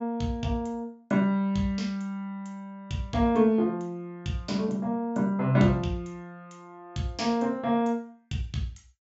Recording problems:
treble missing; nothing above 8 kHz

